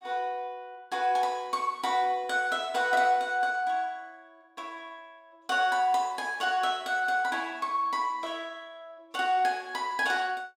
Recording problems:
none

